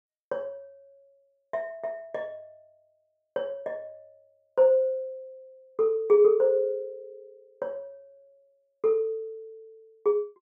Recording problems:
none

